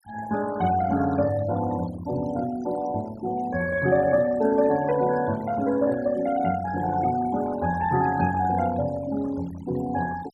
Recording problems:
denoising artefacts; signal-to-artefact ratio 16 dB

